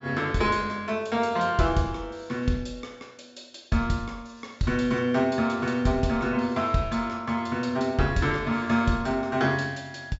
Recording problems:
treble missing; nothing above 8 kHz

